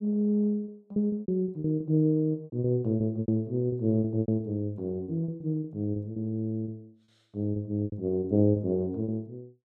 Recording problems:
lost packets; 15% of the sound replaced, filled with repeated pitch periods

